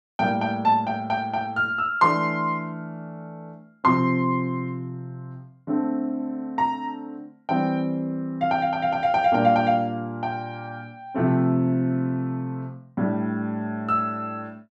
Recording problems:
none

